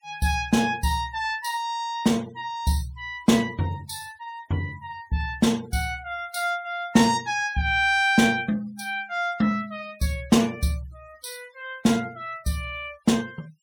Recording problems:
denoising artefacts; signal-to-artefact ratio 25 dB

